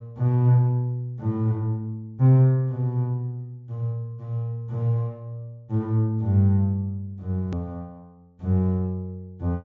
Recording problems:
treble cut off; nothing above 7.3 kHz
hard cut with a click; at 7.5 s

